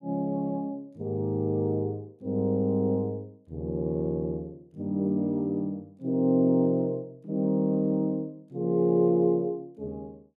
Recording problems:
none

